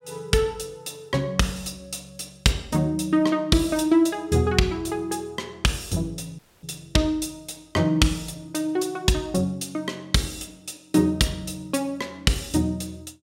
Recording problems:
dropout; at 6.5 s

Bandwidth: 16.5 kHz